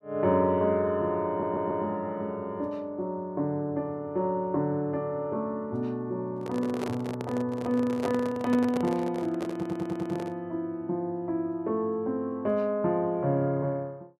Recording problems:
stutter; at 1.5 s and at 9.5 s
handling noise; from 6.5 to 10 s; peak -1 dB vs average level

